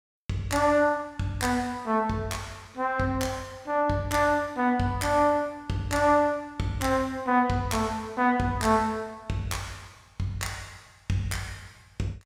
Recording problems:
none

